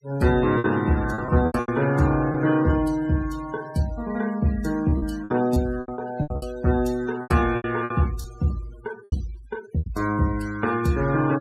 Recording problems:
noise reduction artefacts; signal-to-artefact ratio 18 dB
packet loss; 9% of the sound replaced, filled with repeated pitch periods

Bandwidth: 15.5 kHz